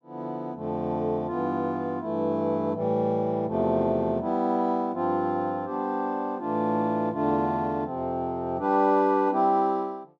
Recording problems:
none

